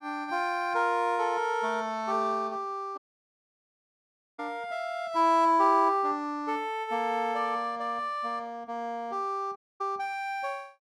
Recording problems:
audio cutting out; at 3 s for 1.5 s and at 9.5 s

